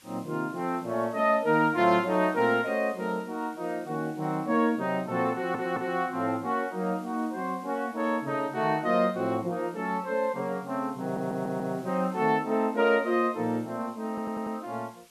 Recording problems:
background hiss; SNR 27 dB
audio stuttering; at 5.5 s, at 11 s and at 14 s

